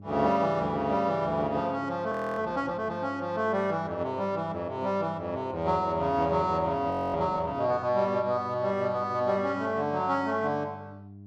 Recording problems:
mains hum; 50 Hz, harmonics up to 400 Hz, SNR 19 dB
frozen audio; at 2 s and at 7 s

